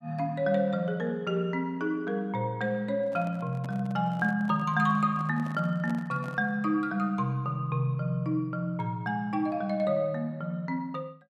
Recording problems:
handling noise; from 3 to 6.5 s; peak -9 dB vs average level

